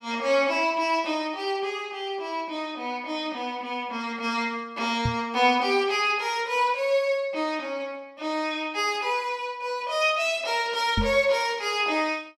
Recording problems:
knock on the microphone; at 5 s and at 11 s; peak +3 dB vs average level

